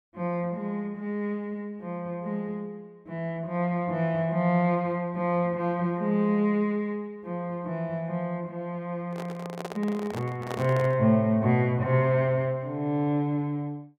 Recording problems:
microphone handling noise; from 9 to 11 s; peak -3 dB vs average level

